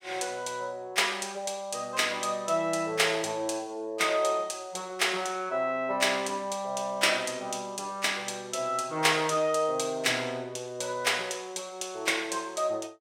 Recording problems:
none

